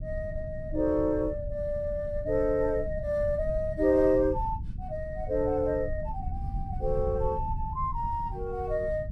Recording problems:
low-frequency rumble; below 100 Hz, SNR 8 dB

